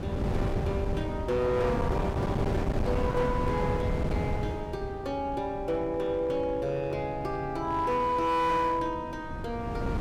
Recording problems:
distorted audio; hard clipping, signal-to-distortion ratio 11 dB
wind on the microphone; below 340 Hz, SNR 3 dB

